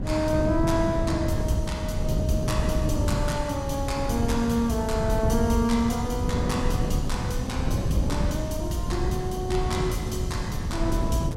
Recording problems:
wind on the microphone; below 190 Hz, SNR 0 dB

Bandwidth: 16 kHz